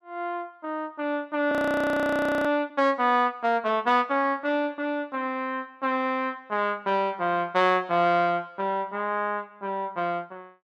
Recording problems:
frozen audio; at 1.5 s for 1 s

